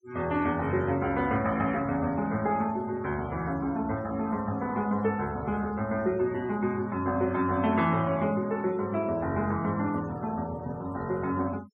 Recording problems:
denoising artefacts; signal-to-artefact ratio 22 dB

